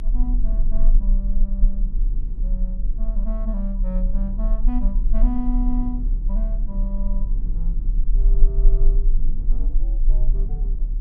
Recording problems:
rumble; below 36 Hz, SNR -9 dB
wind on the microphone; below 150 Hz, SNR 4 dB

